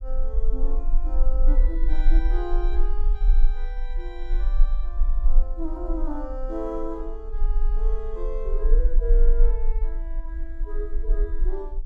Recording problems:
low-frequency rumble; below 34 Hz, strongest tone 24 Hz, SNR -9 dB

